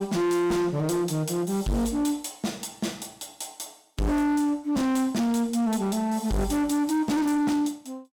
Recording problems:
distorted audio; hard clipping, signal-to-distortion ratio 7 dB

